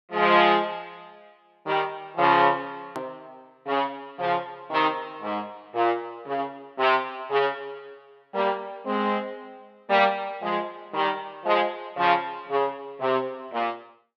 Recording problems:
hard cut with a click; at 3 s

